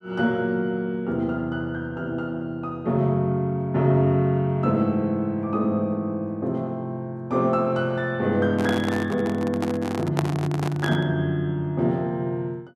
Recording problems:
handling noise; from 8.5 to 11 s; peak +2 dB vs average level

